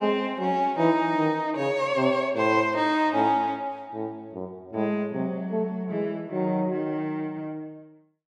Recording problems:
none

